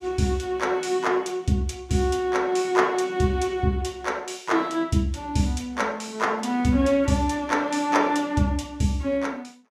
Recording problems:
none

